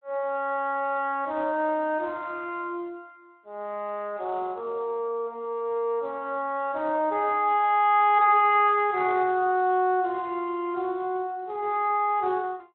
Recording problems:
phone line; 280 Hz to 3.7 kHz, Speex

